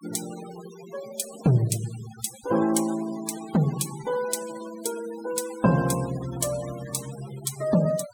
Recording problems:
noise reduction artefacts; signal-to-artefact ratio 14 dB

